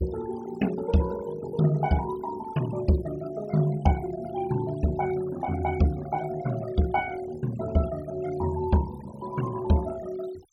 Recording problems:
denoising artefacts; signal-to-artefact ratio 16 dB

